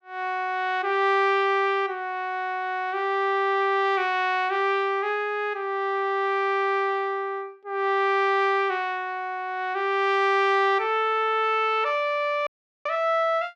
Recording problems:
dropout; at 12 s

